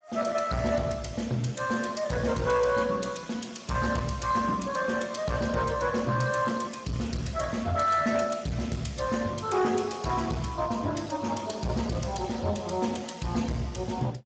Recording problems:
lossy codec; Speex, log-spectral distance 5 dB, nothing above 7.6 kHz
distortion; hard clipping, uneven, signal-to-distortion ratio 11 dB

